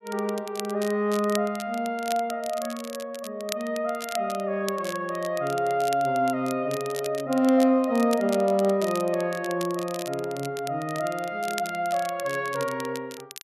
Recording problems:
crackle; vinyl, SNR 14 dB

